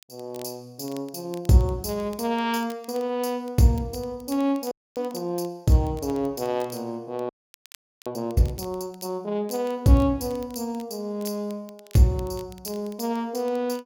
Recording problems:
crackle; vinyl, SNR 26 dB
frozen audio; at 4.5 s and at 7.5 s for 1 s

